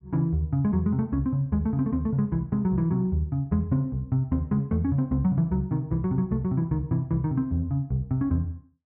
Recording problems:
none

